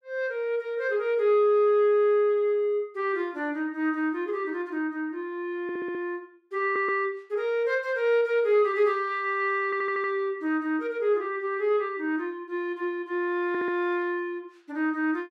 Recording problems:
stutter; 4 times, first at 5.5 s

